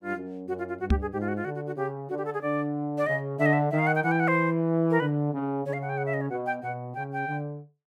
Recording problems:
microphone bump; at 1 s; peak +7 dB vs average level

